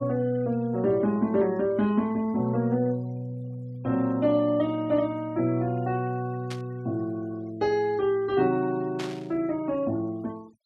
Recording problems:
denoising artefacts; signal-to-artefact ratio 25 dB
burst of static; at 6.5 s and at 9 s; peak -7 dB vs average level

